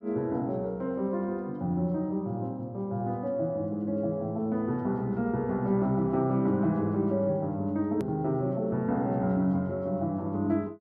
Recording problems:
edit click; at 8 s

